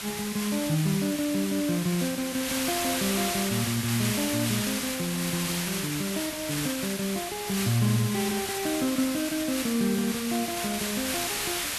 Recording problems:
hiss; slope +1 dB per octave, SNR 2 dB

